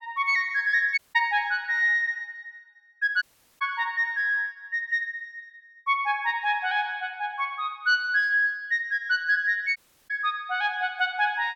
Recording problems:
audio cutting out; at 1 s, at 3 s and at 10 s

